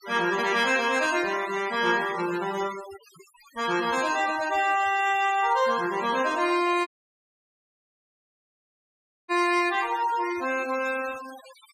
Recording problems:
denoising artefacts; signal-to-artefact ratio 15 dB
audio cutting out; at 7 s for 2.5 s

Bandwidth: 15 kHz